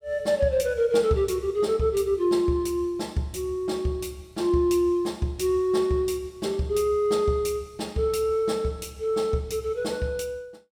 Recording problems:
none

